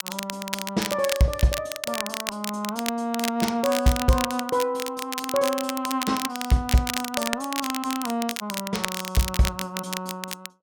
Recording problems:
crackle; vinyl, SNR 5 dB

